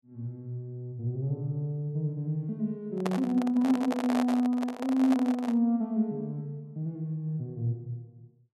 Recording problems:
microphone handling noise; from 3 to 5.5 s; peak 0 dB vs average level

